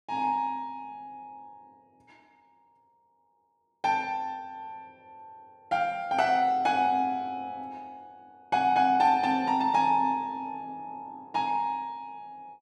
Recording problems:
none

